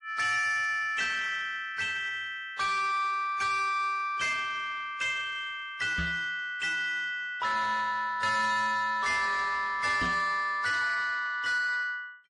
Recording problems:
lossy codec; AAC, then MP3, log-spectral distance 2 dB, nothing above 10.1 kHz
distorted audio; soft clipping, signal-to-distortion ratio 11 dB
microphone thump; at 6 s and at 10 s; peak -2 dB vs average level

